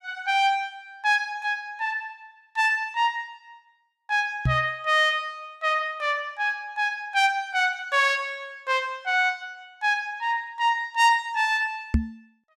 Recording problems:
microphone thump; at 4.5 s and at 12 s; peak +6 dB vs average level

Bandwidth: 15.5 kHz